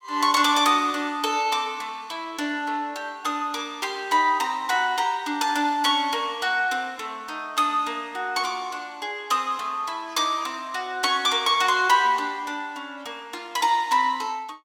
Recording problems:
none

